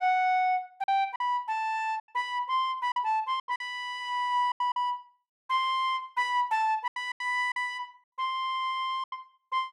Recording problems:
packet loss; 8% of the sound replaced, filled with silence

